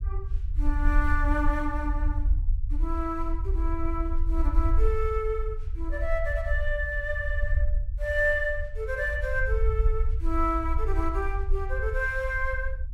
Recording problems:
rumble; below 56 Hz, SNR 0 dB

